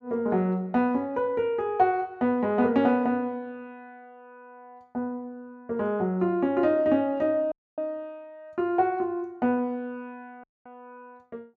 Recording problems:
audio cutting out; at 7.5 s and at 10 s

